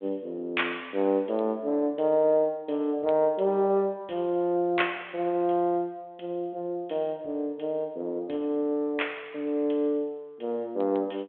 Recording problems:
phone line; 220 Hz to 3.6 kHz, G.726

